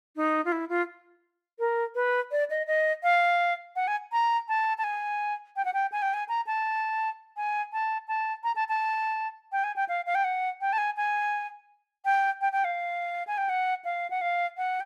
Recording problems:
none

